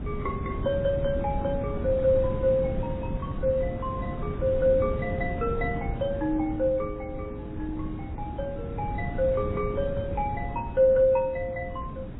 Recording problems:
lossy compression; AAC, then MP3, log-spectral distance 2 dB
wind noise; below 230 Hz, SNR 6 dB

